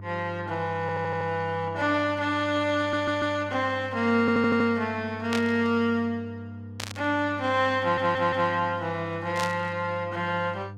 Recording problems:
hum; 50 Hz, harmonics up to 700 Hz, SNR 15 dB
audio stuttering; 4 times, first at 1 s
static burst; at 5.5 s, at 7 s and at 9.5 s; peak -2 dB vs average level

